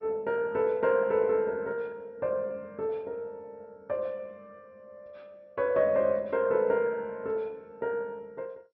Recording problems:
lossy compression; MP2, log-spectral distance 2 dB

